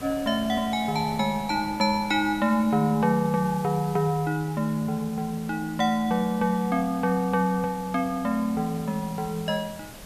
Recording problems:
hiss; slope -2 dB per octave, SNR 20 dB
wind noise; below 690 Hz, SNR 21 dB

